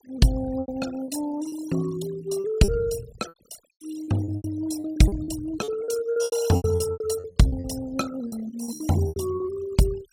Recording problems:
noise reduction artefacts; signal-to-artefact ratio 15 dB
packet loss; 15% of the sound replaced, filled with repeated pitch periods

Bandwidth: 16 kHz